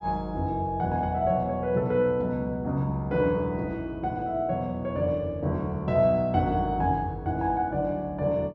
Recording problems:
none

